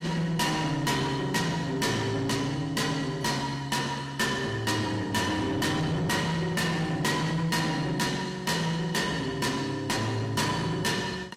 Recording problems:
codec artefacts; AAC, log-spectral distance 3 dB, nothing above 15.1 kHz
distorted audio; soft clipping, signal-to-distortion ratio 6 dB

